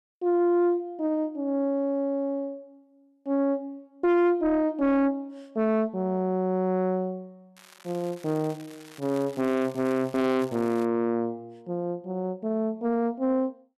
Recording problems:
distortion; soft clipping, signal-to-distortion ratio 10 dB
crackling; from 7.5 to 11 s; loose cable, SNR 23 dB

